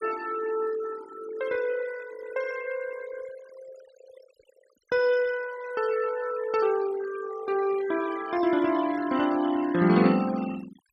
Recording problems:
denoising artefacts; signal-to-artefact ratio 16 dB

